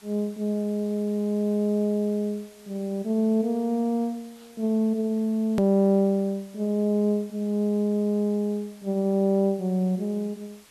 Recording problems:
hiss; slope -1 dB per octave, SNR 27 dB
hard cut with a click; at 5.5 s

